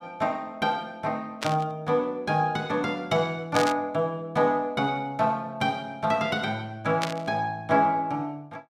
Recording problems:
static burst; at 1.5 s, at 3.5 s and at 7 s; peak +1 dB vs average level

